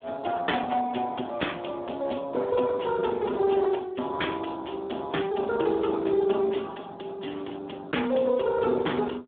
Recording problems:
phone line; 190 Hz to 2.8 kHz, Speex

